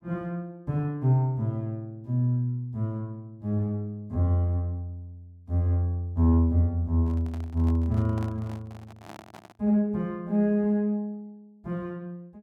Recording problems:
microphone handling noise; from 7 to 9.5 s; peak -11 dB vs average level

